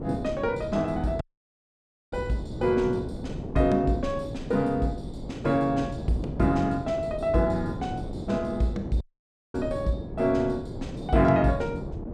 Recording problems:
wind noise; below 360 Hz, SNR 9 dB
audio cutting out; at 1 s for 1 s and at 9 s for 0.5 s

